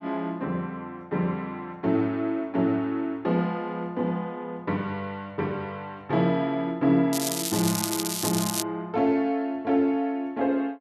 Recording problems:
crackle; from 7 to 8.5 s; loose cable, SNR 2 dB

